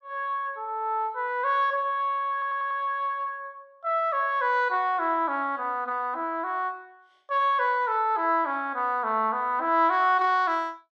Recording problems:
stutter; at 2.5 s

